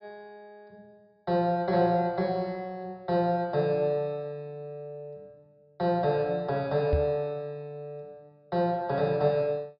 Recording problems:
low-pass filter; nothing above 5.5 kHz
microphone bump; at 7 s; peak +4 dB vs average level

